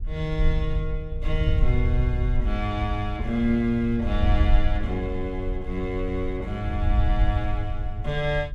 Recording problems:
wind on the microphone; below 70 Hz, SNR 0 dB

